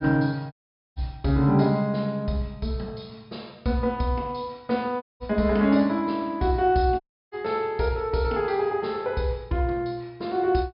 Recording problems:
treble missing; nothing above 5.5 kHz
audio cutting out; at 0.5 s, at 5 s and at 7 s

